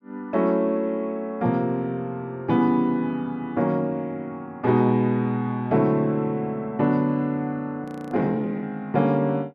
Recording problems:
audio freezing; at 8 s

